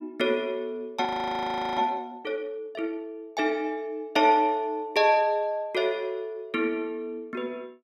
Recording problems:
frozen audio; at 1 s for 0.5 s

